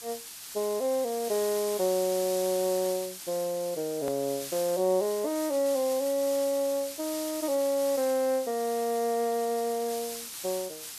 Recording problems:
background hiss; slope +3 dB per octave, SNR 9 dB
edit click; at 4 s

